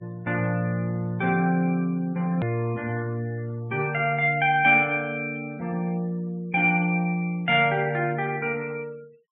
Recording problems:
low-pass filter; nothing above 4 kHz
denoising artefacts; signal-to-artefact ratio 27 dB
click at an edit; at 2.5 s

